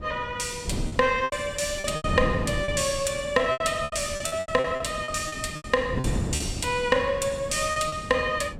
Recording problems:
wind on the microphone; below 260 Hz, SNR 9 dB
lost packets; 12% of the sound replaced, filled with repeated pitch periods

